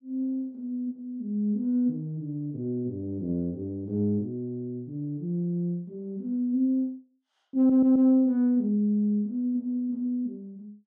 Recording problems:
stutter; at 7.5 s

